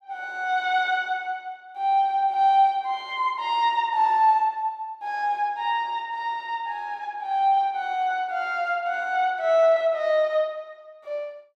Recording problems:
none

